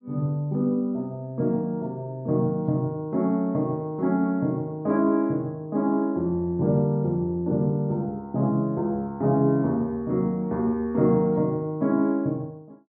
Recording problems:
none

